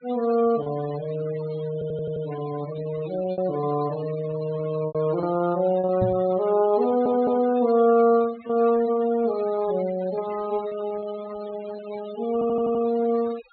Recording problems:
treble cut off; nothing above 4.3 kHz
noise reduction artefacts; signal-to-artefact ratio 18 dB
packet loss; 4% of the sound replaced, filled with repeated pitch periods
audio stuttering; at 1.5 s, at 7 s and at 12 s
knock on the microphone; at 6 s; peak 0 dB vs average level

